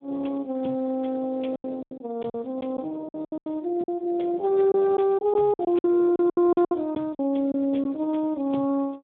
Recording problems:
phone line; 190 Hz to 3.4 kHz, Speex
packet loss; 11% of the sound replaced, filled with silence

